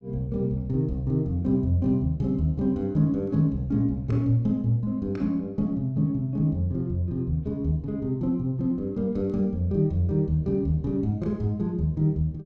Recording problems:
none

